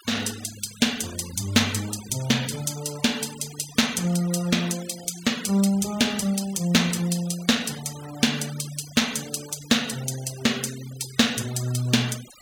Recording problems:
denoising artefacts; signal-to-artefact ratio 15 dB

